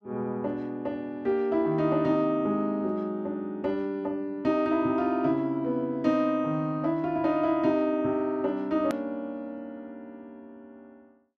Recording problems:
hard cut with a click; at 9 s

